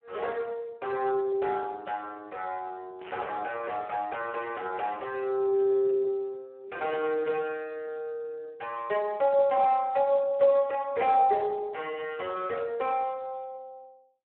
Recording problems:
phone line; 340 Hz to 3.1 kHz, Speex
static burst; at 3 s; peak -11 dB vs average level

